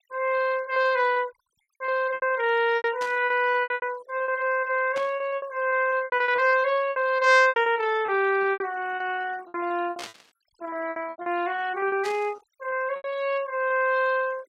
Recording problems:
denoising artefacts; signal-to-artefact ratio 23 dB
lost packets; 16% of the sound replaced, filled with repeated pitch periods
static burst; 4 times, first at 3 s; peak -7 dB vs average level

